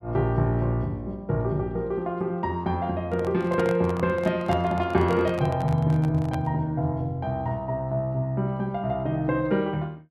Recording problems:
microphone handling noise; from 3 to 6.5 s; peak -3 dB vs average level

